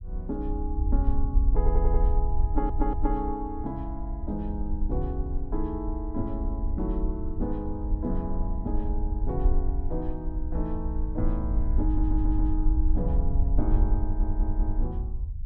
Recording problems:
low-frequency rumble; below 56 Hz, SNR -3 dB
audio stuttering; 4 times, first at 1.5 s

